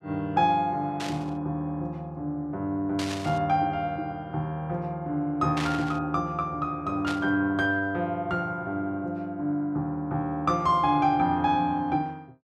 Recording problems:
static burst; 4 times, first at 1 s; peak -3 dB vs average level

